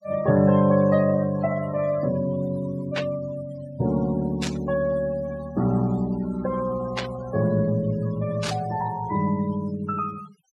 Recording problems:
denoising artefacts; signal-to-artefact ratio 18 dB
burst of static; 4 times, first at 3 s; peak 0 dB vs average level

